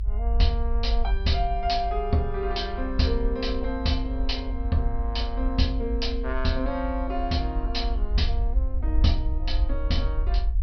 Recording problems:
treble missing; nothing above 5.5 kHz
low-frequency rumble; below 52 Hz, SNR 1 dB

